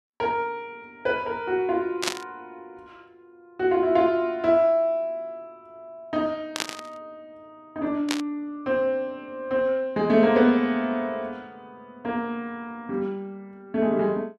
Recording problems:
static burst; at 2 s, at 6.5 s and at 8 s; peak +4 dB vs average level

